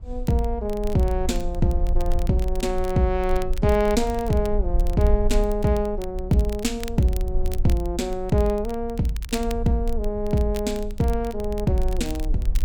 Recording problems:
rumble; below 50 Hz, SNR 7 dB
crackle; vinyl, SNR 20 dB

